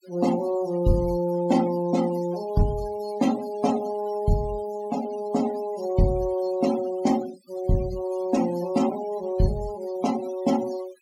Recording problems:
noise reduction artefacts; signal-to-artefact ratio 15 dB

